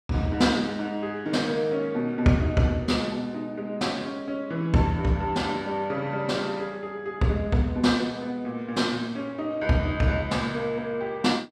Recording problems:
none

